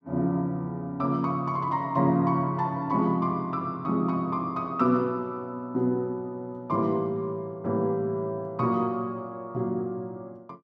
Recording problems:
none

